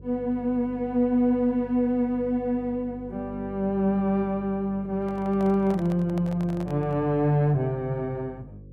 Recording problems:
electrical hum; 50 Hz, harmonics up to 550 Hz, SNR 18 dB
microphone handling noise; from 5 to 7 s; peak -11 dB vs average level

